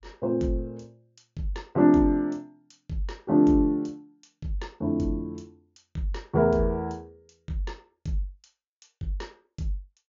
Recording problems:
treble cut off; nothing above 7.2 kHz

